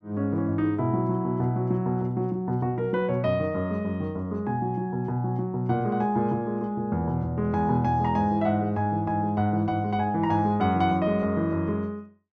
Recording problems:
none

